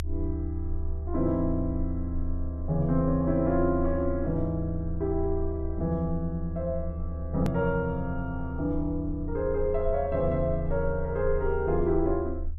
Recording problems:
rumble; below 76 Hz, strongest tone 22 Hz, SNR 6 dB
click at an edit; at 7.5 s

